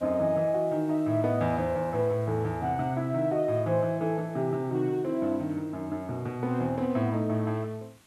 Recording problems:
hiss; slope -2 dB per octave, SNR 29 dB

